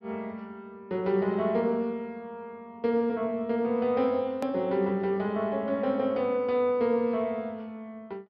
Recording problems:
treble cut off; nothing above 5.5 kHz
click at an edit; at 4.5 s

